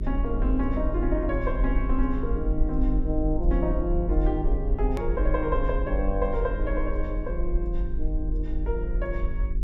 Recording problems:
hum; 50 Hz, harmonics up to 400 Hz, SNR 6 dB
rumble; below 46 Hz, SNR 0 dB
click at an edit; at 5 s

